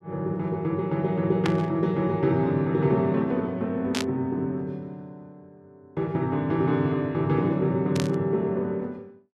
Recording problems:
static burst; at 1.5 s, at 4 s and at 8 s; peak 0 dB vs average level

